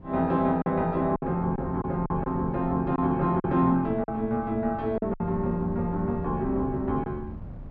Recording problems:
wind on the microphone; below 170 Hz, SNR 14 dB
packet loss; 6% of the sound replaced, filled with silence

